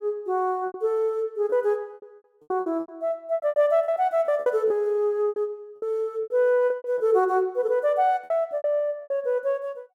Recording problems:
lost packets; 14% of the sound replaced, filled with repeated pitch periods

